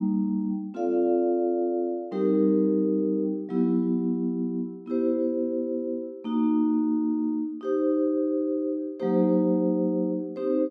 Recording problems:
none

